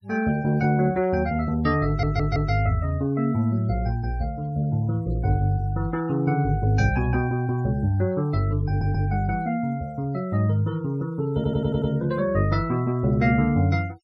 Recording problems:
noise reduction artefacts; signal-to-artefact ratio 27 dB
audio stuttering; at 2 s, at 8.5 s and at 11 s

